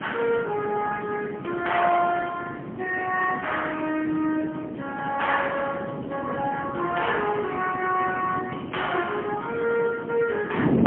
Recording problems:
telephone audio; 220 Hz to 3.2 kHz, AMR-NB, then MP3
wind on the microphone; below 410 Hz, SNR 8 dB

